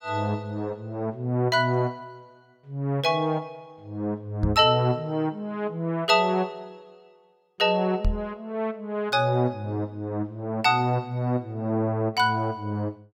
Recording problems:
knock on the microphone; at 4.5 s and at 8 s; peak +3 dB vs average level

